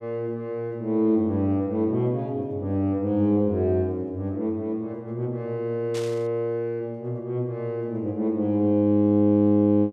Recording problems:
burst of static; at 6 s; peak -9 dB vs average level

